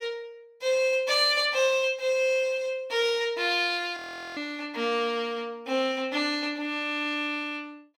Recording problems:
audio freezing; at 4 s

